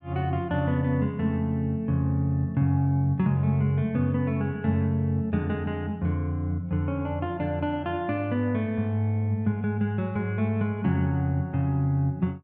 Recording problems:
none

